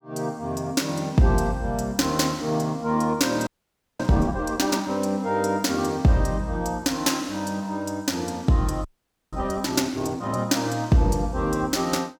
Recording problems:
audio freezing; at 3.5 s for 0.5 s and at 9 s

